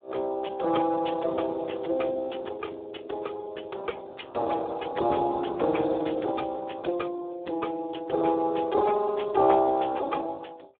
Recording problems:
phone line; 280 Hz to 2.2 kHz, Speex

